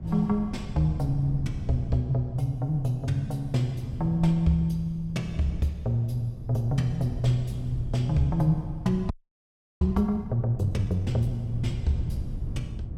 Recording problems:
wind noise; below 140 Hz, SNR 10 dB
audio freezing; at 9 s for 0.5 s

